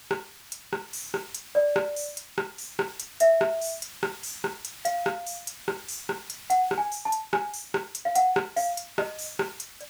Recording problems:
hiss; slope +2 dB per octave, SNR 16 dB

